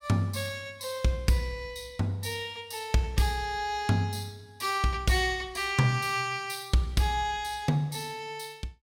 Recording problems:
none

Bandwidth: 16.5 kHz